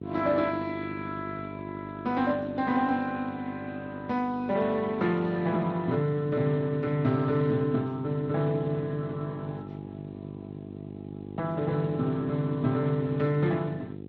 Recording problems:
codec artefacts; Speex, log-spectral distance 3 dB
electrical hum; 50 Hz, harmonics up to 550 Hz, SNR 13 dB

